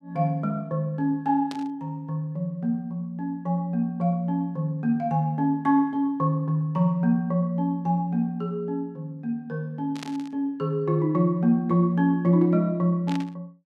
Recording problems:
static burst; at 1.5 s, at 10 s and at 13 s; peak -7 dB vs average level

